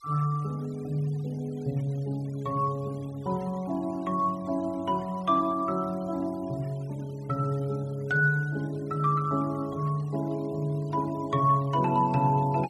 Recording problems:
noise reduction artefacts; signal-to-artefact ratio 25 dB

